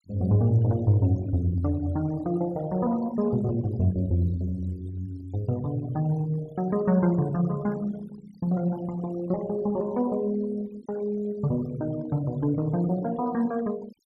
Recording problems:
noise reduction artefacts; signal-to-artefact ratio 22 dB

